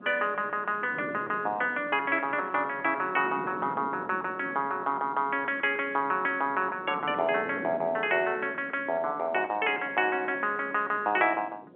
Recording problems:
phone line; 280 Hz to 3.5 kHz, G.711
wind noise; below 490 Hz, SNR 17 dB

